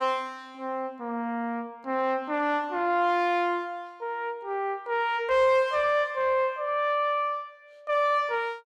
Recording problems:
distorted audio; soft clipping, signal-to-distortion ratio 10 dB

